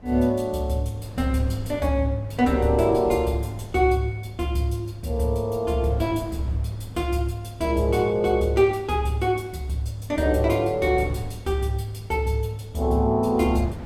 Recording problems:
wind on the microphone; below 220 Hz, SNR 18 dB

